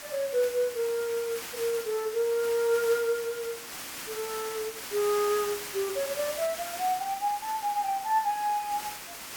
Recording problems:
hiss; slope 0 dB per octave, SNR 8 dB

